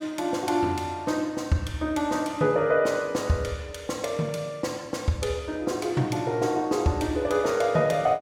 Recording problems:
none

